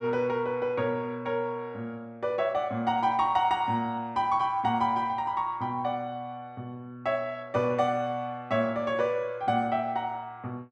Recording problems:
none

